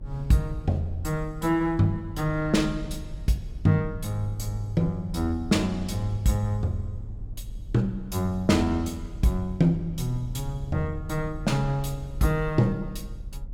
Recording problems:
low-frequency rumble; below 68 Hz, SNR 13 dB

